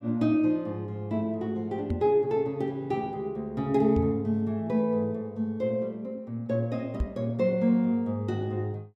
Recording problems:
knock on the microphone; at 2 s, at 4 s and at 7 s; peak +3 dB vs average level

